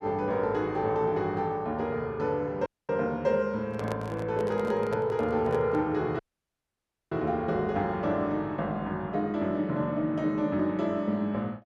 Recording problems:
audio cutting out; at 2.5 s and at 6 s for 1 s
microphone handling noise; from 3.5 to 6 s; peak -2 dB vs average level

